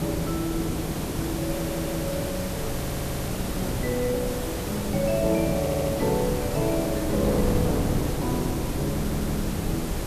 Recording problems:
hum; 60 Hz, harmonics up to 540 Hz, SNR 19 dB
background hiss; slope -3 dB per octave, SNR 6 dB
rumble; below 130 Hz, SNR 11 dB
wind noise; below 410 Hz, SNR 3 dB
audio stuttering; 4 times, first at 1.5 s

